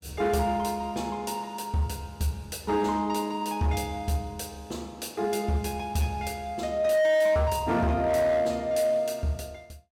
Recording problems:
distortion; hard clipping, signal-to-distortion ratio 12 dB

